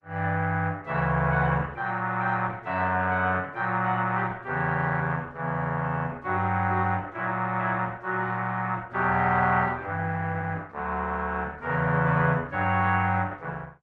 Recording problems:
lossy codec; Opus, log-spectral distance 3 dB

